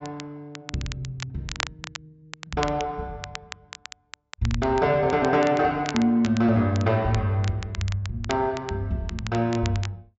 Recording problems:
treble cut off; nothing above 8 kHz
crackle; vinyl, SNR 14 dB

